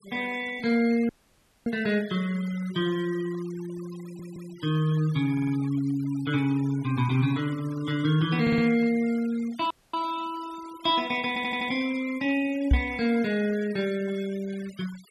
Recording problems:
denoising artefacts; signal-to-artefact ratio 20 dB
dropout; at 1 s for 0.5 s and at 9.5 s
stutter; 4 times, first at 4 s
microphone thump; at 13 s; peak +9 dB vs average level

